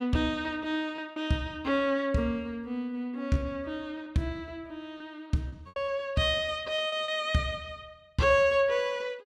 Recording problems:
packet loss; 5% of the sound replaced, filled with repeated pitch periods

